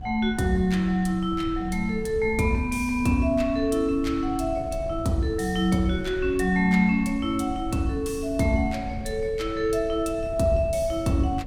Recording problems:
wind noise; below 110 Hz, SNR 14 dB

